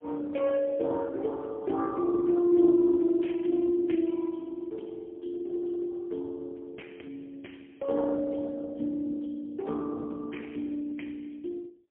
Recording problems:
phone line; 190 Hz to 3.2 kHz, AMR-NB, then MP3

